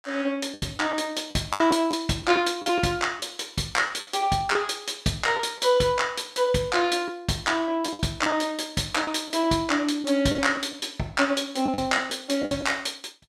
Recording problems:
lost packets; 7% of the sound replaced, filled with the last packet

